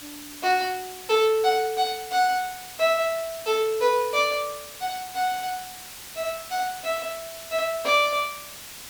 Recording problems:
hiss; slope +1 dB per octave, SNR 13 dB

